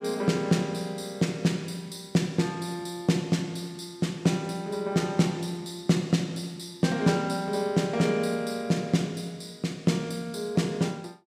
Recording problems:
none

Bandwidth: 15.5 kHz